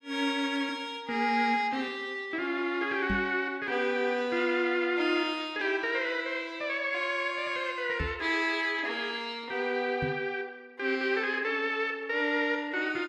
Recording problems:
microphone bump; at 3 s, at 8 s and at 10 s; peak 0 dB vs average level

